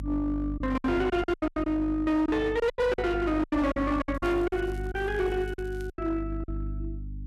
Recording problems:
distortion; hard clipping, uneven, signal-to-distortion ratio 10 dB
hum; 50 Hz, harmonics up to 300 Hz, SNR 9 dB
packet loss; 13% of the sound replaced, filled with silence
crackling; from 4 to 6 s; loose cable, SNR 29 dB

